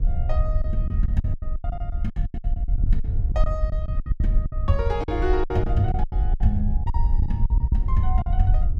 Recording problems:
rumble; below 64 Hz, SNR -3 dB
packet loss; 17% of the sound replaced, filled with silence

